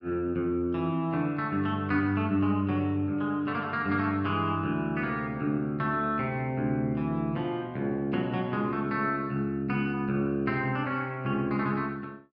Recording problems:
none

